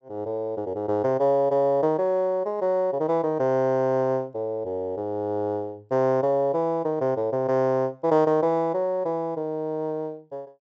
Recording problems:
treble cut off; nothing above 7.8 kHz

